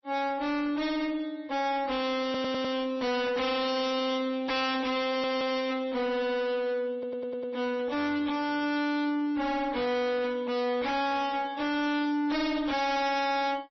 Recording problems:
lossy compression; MP3, log-spectral distance 3 dB, nothing above 5.8 kHz
distortion; hard clipping, signal-to-distortion ratio 6 dB
stutter; at 2 s, at 5 s and at 7 s

